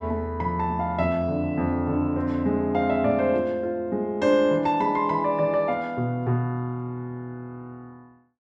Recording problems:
none

